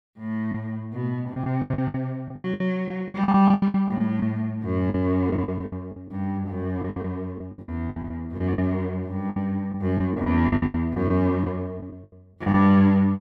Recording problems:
packet loss; 15% of the sound replaced, filled with the last packet

